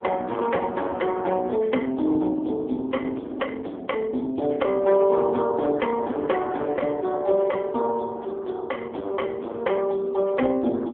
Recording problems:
telephone audio; 220 Hz to 2 kHz, AMR-NB
distorted audio; hard clipping, signal-to-distortion ratio 10 dB

